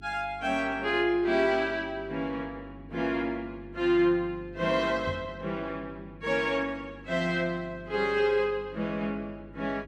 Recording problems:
hum; 50 Hz, harmonics up to 400 Hz, SNR 20 dB
microphone bump; at 5 s; peak -4 dB vs average level

